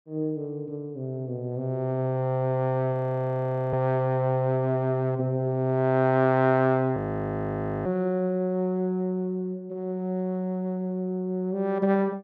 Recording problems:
audio freezing; at 3 s for 1 s and at 7 s for 1 s

